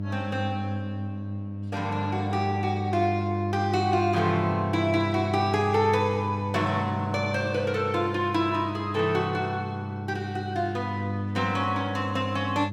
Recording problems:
hum; 50 Hz, harmonics up to 600 Hz, SNR 5 dB

